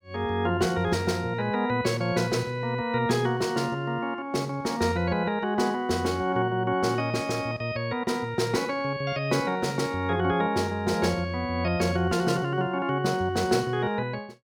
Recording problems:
none

